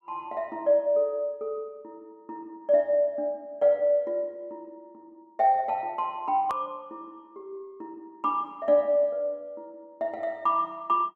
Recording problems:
click at an edit; at 6.5 s

